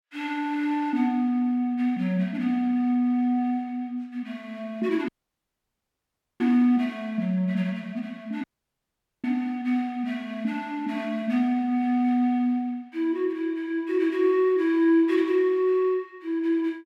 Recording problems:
dropout; at 5 s for 1.5 s and at 8.5 s for 1 s

